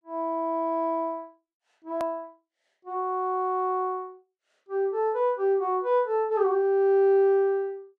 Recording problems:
hard cut with a click; at 2 s

